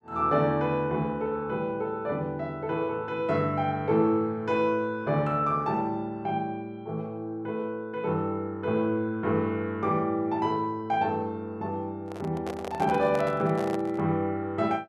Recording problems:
handling noise; from 12 to 14 s; peak -3 dB vs average level

